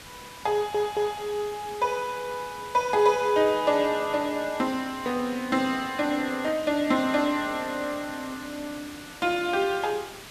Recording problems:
background hiss; slope -2 dB per octave, SNR 16 dB
stutter; at 0.5 s

